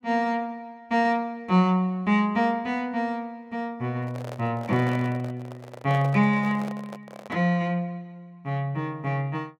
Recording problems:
handling noise; from 4 to 7.5 s; peak -8 dB vs average level

